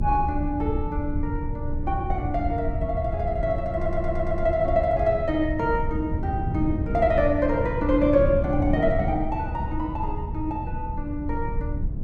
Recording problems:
low-frequency rumble; below 82 Hz, strongest tone 20 Hz, SNR 6 dB
wind on the microphone; below 210 Hz, SNR 8 dB
audio stuttering; at 3.5 s

